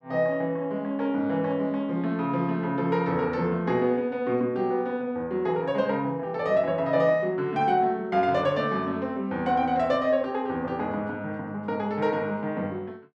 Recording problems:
none

